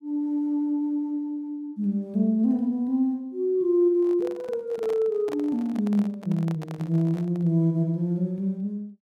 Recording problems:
microphone handling noise; from 4 to 7.5 s; peak -8 dB vs average level

